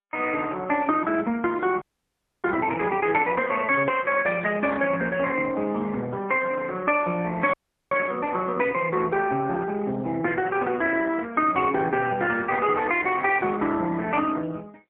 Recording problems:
telephone audio; 240 Hz to 3.3 kHz, AMR-NB, then MP3
frozen audio; at 2 s for 0.5 s and at 7.5 s

